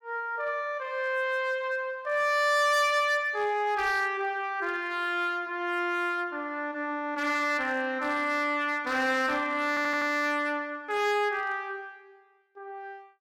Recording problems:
distortion; hard clipping, uneven, signal-to-distortion ratio 12 dB
audio stuttering; at 9.5 s

